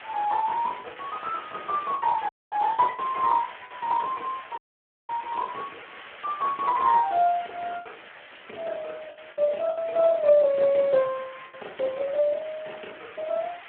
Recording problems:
telephone audio; 280 Hz to 3.3 kHz, Speex
background hiss; SNR 17 dB
packet loss; 7% of the sound replaced, filled with the last packet
crackle; from 2 to 4 s and at 6 s; loose cable, SNR 27 dB
dropout; at 2.5 s and at 4.5 s for 0.5 s

